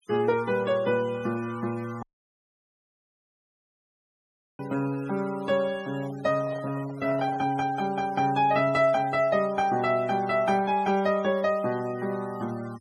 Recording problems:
noise reduction artefacts; signal-to-artefact ratio 21 dB
dropout; at 2 s for 2.5 s
handling noise; from 6 to 7.5 s; peak -10 dB vs average level

